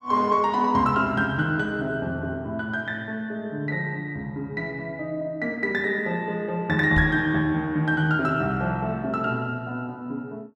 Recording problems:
knock on the microphone; at 7 s; peak +1 dB vs average level

